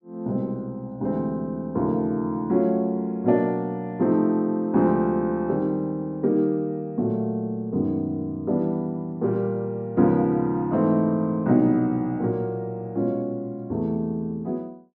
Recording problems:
none

